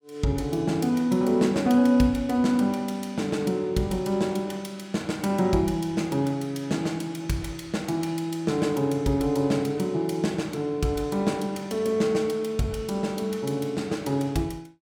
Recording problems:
none

